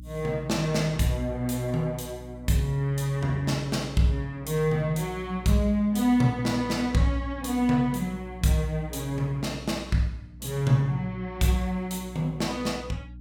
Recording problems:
hum; 60 Hz, harmonics up to 300 Hz, SNR 17 dB

